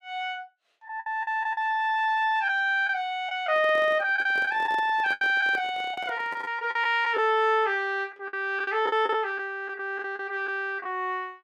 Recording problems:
packet loss; 9% of the sound replaced, filled with the last packet
handling noise; from 3.5 to 6.5 s; peak -9 dB vs average level

